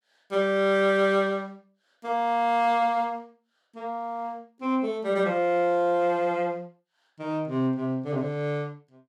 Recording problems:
none

